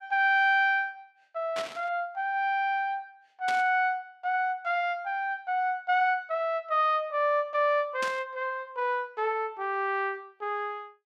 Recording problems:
static burst; at 1.5 s, at 3.5 s and at 8 s; peak -4 dB vs average level

